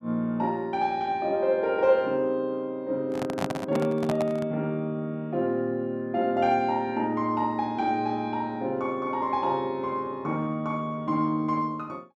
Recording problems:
microphone handling noise; from 3 to 4.5 s; peak 0 dB vs average level

